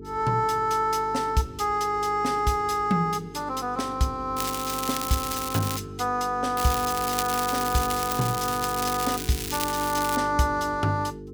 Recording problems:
hum; 50 Hz, harmonics up to 450 Hz, SNR 13 dB
crackle; from 4.5 to 6 s and from 6.5 to 10 s; loose cable, SNR 6 dB

